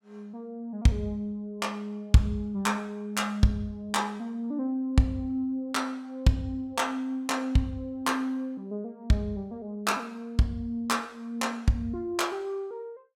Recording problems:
none

